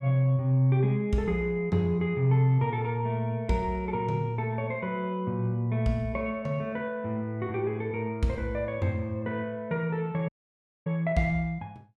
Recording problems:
dropout; at 10 s for 0.5 s

